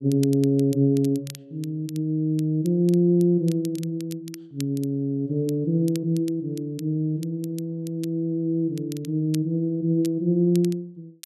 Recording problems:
crackling; vinyl, SNR 21 dB

